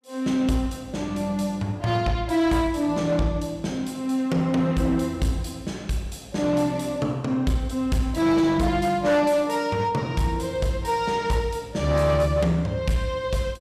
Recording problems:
distorted audio; hard clipping, uneven, signal-to-distortion ratio 11 dB

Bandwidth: 15.5 kHz